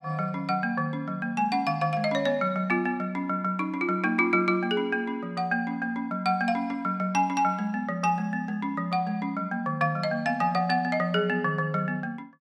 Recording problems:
none

